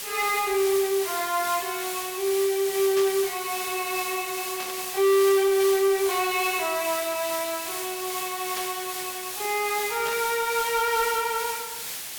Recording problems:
distorted audio; soft clipping, signal-to-distortion ratio 8 dB
hiss; slope +2 dB per octave, SNR 6 dB
burst of static; 4 times, first at 3 s; peak -5 dB vs average level

